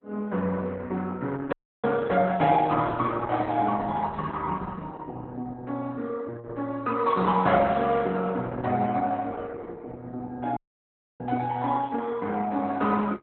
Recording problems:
lossy compression; Opus, log-spectral distance 3 dB, nothing above 3.8 kHz
dropout; at 1.5 s and at 11 s for 0.5 s

